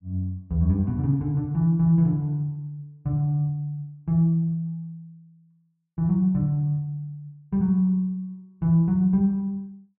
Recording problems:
none

